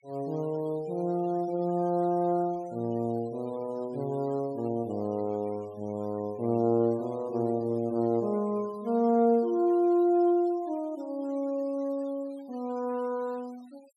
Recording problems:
noise reduction artefacts; signal-to-artefact ratio 28 dB

